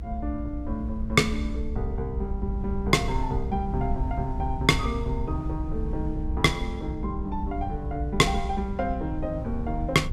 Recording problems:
low-frequency rumble; below 66 Hz, SNR 6 dB
wind on the microphone; below 140 Hz, SNR 11 dB

